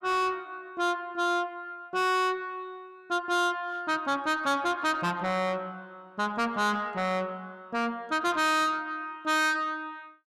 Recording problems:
distortion; soft clipping, signal-to-distortion ratio 6 dB

